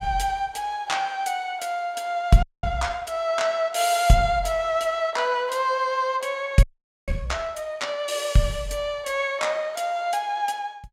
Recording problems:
audio freezing; at 2.5 s and at 6.5 s

